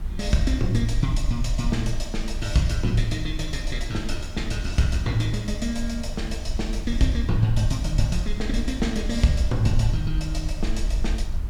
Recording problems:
hum; 50 Hz, harmonics up to 700 Hz, SNR 19 dB
hiss; SNR 20 dB
rumble; below 52 Hz, SNR 5 dB

